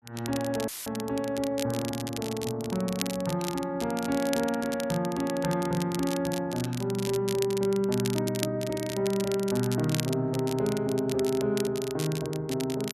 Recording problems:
crackling; vinyl, SNR 10 dB
audio cutting out; at 0.5 s; filled with static

